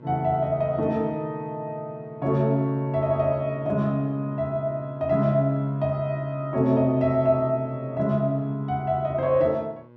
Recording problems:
hum; 60 Hz, harmonics up to 2 kHz, SNR 24 dB

